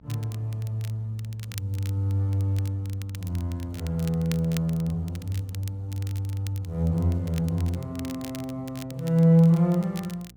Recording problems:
electrical hum; 60 Hz, harmonics up to 540 Hz, SNR 25 dB
crackle; vinyl, SNR 20 dB

